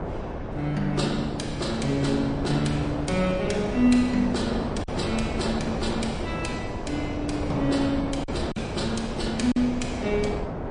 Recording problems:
codec artefacts; MP3, log-spectral distance 2 dB, nothing above 9 kHz
wind on the microphone; below 620 Hz, SNR 5 dB
lost packets; 1.6% of the sound replaced, filled with silence

